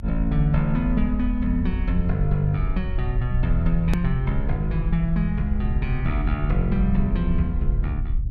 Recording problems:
low-frequency rumble; below 56 Hz, SNR 3 dB
hard cut with a click; at 4 s

